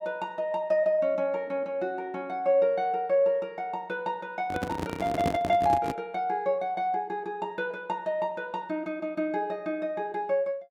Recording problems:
handling noise; from 4.5 to 6 s; peak +3 dB vs average level

